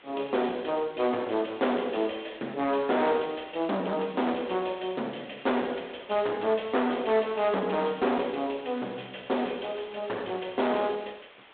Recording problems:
phone line; 300 Hz to 3.7 kHz, G.726
distortion; hard clipping, uneven, signal-to-distortion ratio 8 dB
hiss; SNR 23 dB

